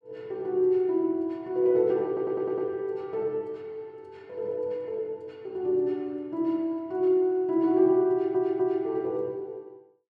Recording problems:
audio stuttering; at 2 s and at 8 s

